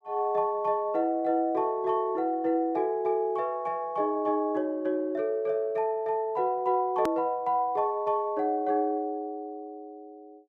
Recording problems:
edit click; at 7 s

